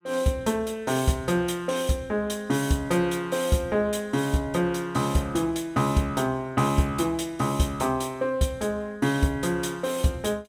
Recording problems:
none

